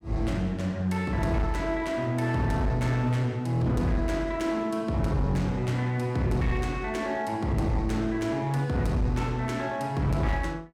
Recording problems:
distorted audio; hard clipping, uneven, signal-to-distortion ratio 10 dB

